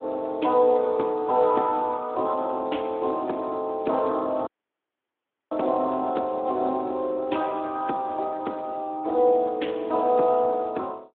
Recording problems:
telephone audio; 220 Hz to 3.5 kHz, Speex
dropout; at 4.5 s for 1 s

